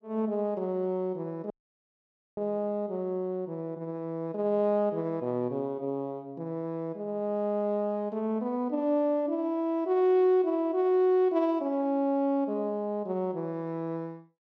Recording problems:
audio cutting out; at 1.5 s for 1 s

